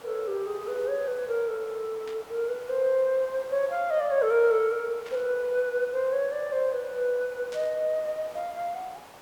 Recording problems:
background hiss; SNR 20 dB
static burst; at 2 s, at 5 s and at 7.5 s; peak -12 dB vs average level

